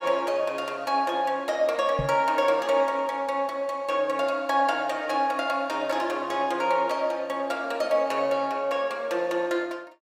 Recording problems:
microphone thump; at 2 s; peak -1 dB vs average level

